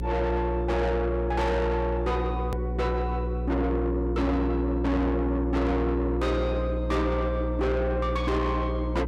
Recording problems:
distorted audio; soft clipping, signal-to-distortion ratio 6 dB
hum; 60 Hz, harmonics up to 540 Hz, SNR 3 dB
hard cut with a click; at 2.5 s

